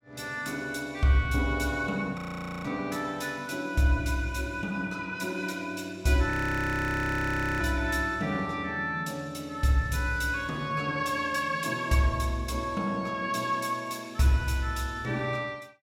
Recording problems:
frozen audio; at 2 s and at 6.5 s for 1.5 s

